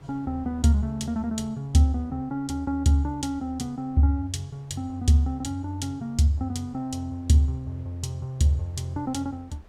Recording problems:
wind noise; below 430 Hz, SNR 28 dB

